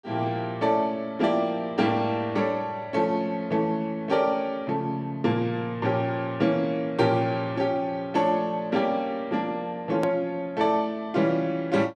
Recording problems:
edit click; at 10 s

